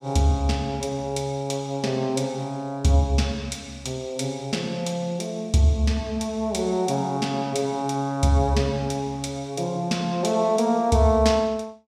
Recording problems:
none

